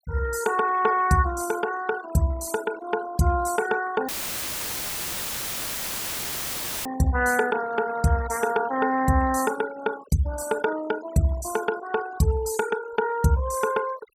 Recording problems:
noise reduction artefacts; signal-to-artefact ratio 15 dB
audio cutting out; at 4 s for 3 s; filled with static

